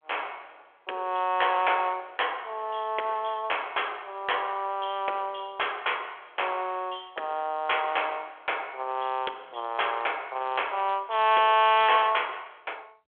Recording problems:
phone line; 320 Hz to 3.4 kHz, G.726

